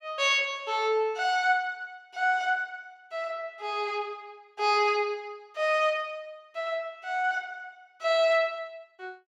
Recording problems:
none

